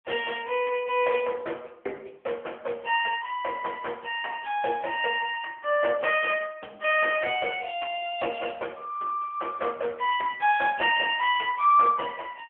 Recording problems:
telephone audio; 370 Hz to 3.3 kHz, AMR-NB

